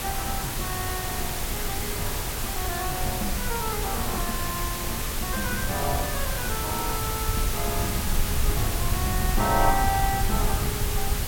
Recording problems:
hiss; slope -2 dB per octave, SNR -1 dB
low-frequency rumble; below 90 Hz, SNR 1 dB

